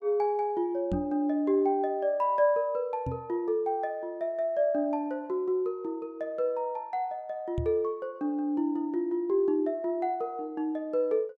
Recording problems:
knock on the microphone; at 1 s, at 3 s and at 7.5 s; peak 0 dB vs average level

